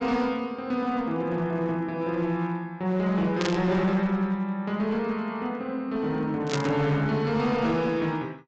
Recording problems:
treble missing; nothing above 8 kHz
distortion; hard clipping, uneven, signal-to-distortion ratio 11 dB
burst of static; at 3.5 s and at 6.5 s; peak 0 dB vs average level

